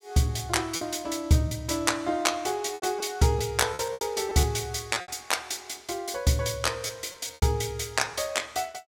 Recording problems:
lost packets; 7% of the sound replaced, filled with repeated pitch periods

